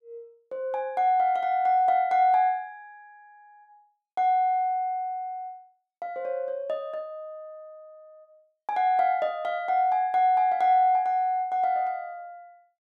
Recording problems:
none

